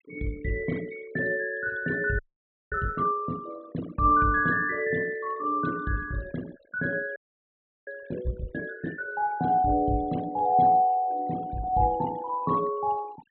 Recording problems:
treble missing; nothing above 4 kHz
denoising artefacts; signal-to-artefact ratio 19 dB
audio freezing; at 2 s for 0.5 s and at 7 s for 0.5 s

